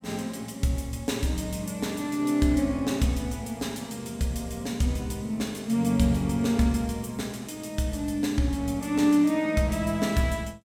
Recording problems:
none

